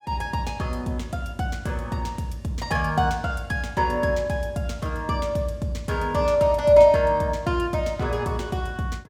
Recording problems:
none

